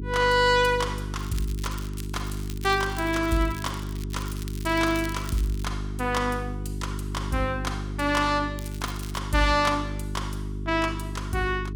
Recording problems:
hum; 50 Hz, harmonics up to 400 Hz, SNR 7 dB
crackling; from 1 to 5.5 s and at 8.5 s; loose cable, SNR 17 dB

